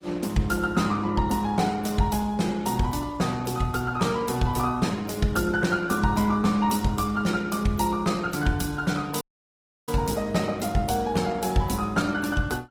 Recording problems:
codec artefacts; Opus, log-spectral distance 4 dB
dropout; at 9 s for 0.5 s

